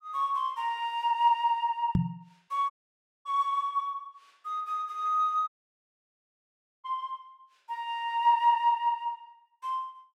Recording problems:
microphone thump; at 2 s; peak +6 dB vs average level
audio cutting out; at 2.5 s for 0.5 s and at 5.5 s for 1.5 s

